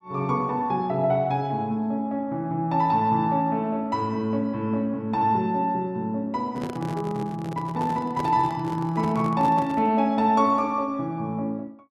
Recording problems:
microphone handling noise; from 6.5 to 10 s; peak -2 dB vs average level

